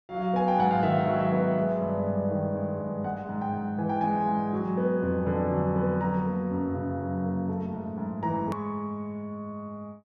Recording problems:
edit click; at 8.5 s

